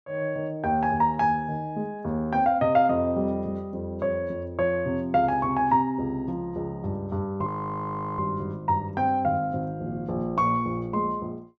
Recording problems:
frozen audio; at 7.5 s for 0.5 s

